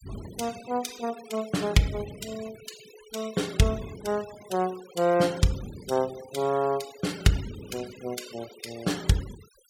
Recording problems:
denoising artefacts; signal-to-artefact ratio 16 dB

